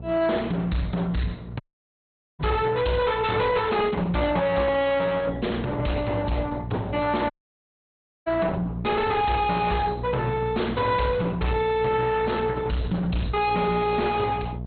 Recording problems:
treble missing; nothing above 4.1 kHz
codec artefacts; Opus, log-spectral distance 3 dB
distorted audio; soft clipping, signal-to-distortion ratio 7 dB
hum; 60 Hz, harmonics up to 720 Hz, SNR 12 dB
dropout; at 1.5 s for 1 s and at 7.5 s for 1 s

